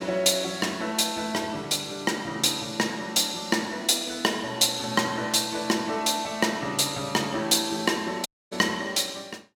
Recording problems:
dropout; at 8.5 s

